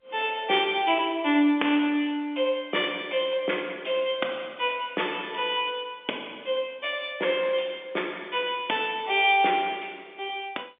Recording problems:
phone line; 240 Hz to 3.6 kHz, G.711

